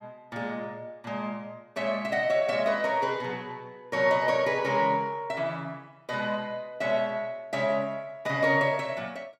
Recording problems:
none

